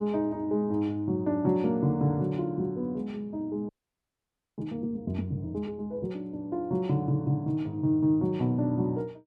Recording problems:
audio freezing; at 3.5 s for 1 s

